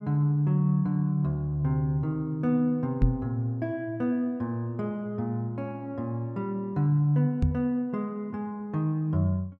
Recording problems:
microphone thump; at 3 s and at 7.5 s; peak +8 dB vs average level

